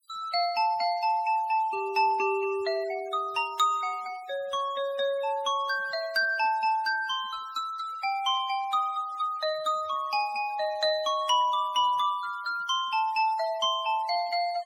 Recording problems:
noise reduction artefacts; signal-to-artefact ratio 23 dB

